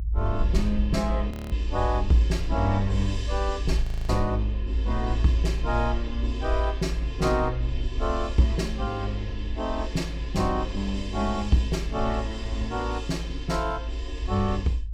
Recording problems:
rumble; below 58 Hz, strongest tone 54 Hz, SNR 3 dB
audio freezing; at 1.5 s and at 4 s

